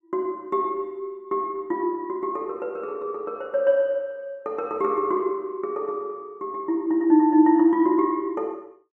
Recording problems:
none

